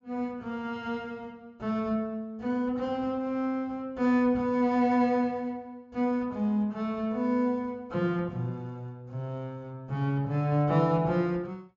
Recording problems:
treble cut off; nothing above 7.4 kHz

